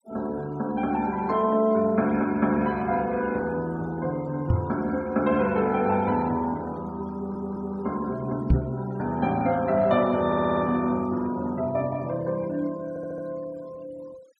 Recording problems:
denoising artefacts; signal-to-artefact ratio 24 dB
microphone thump; at 4.5 s and at 8.5 s; peak +9 dB vs average level
stutter; at 7 s, at 10 s and at 13 s

